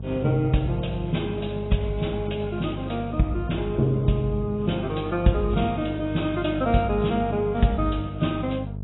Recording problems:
lossy codec; AAC, log-spectral distance 4 dB, nothing above 3.8 kHz
electrical hum; 50 Hz, harmonics up to 650 Hz, SNR 9 dB

